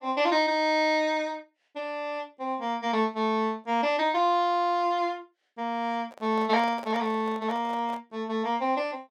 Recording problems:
handling noise; from 6 to 8 s; peak -9 dB vs average level

